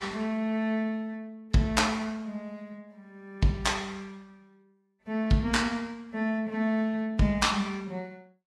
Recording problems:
codec artefacts; Vorbis, log-spectral distance 2 dB, nothing above 12 kHz

